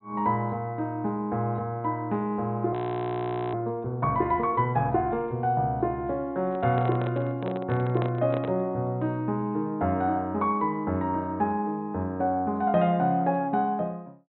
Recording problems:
treble missing; nothing above 4 kHz
frozen audio; at 2.5 s for 1 s
handling noise; from 6.5 to 8.5 s; peak -1 dB vs average level

